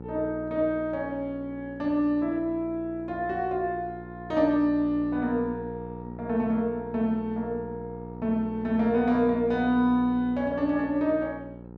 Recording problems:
hum; 60 Hz, harmonics up to 1 kHz, SNR 14 dB

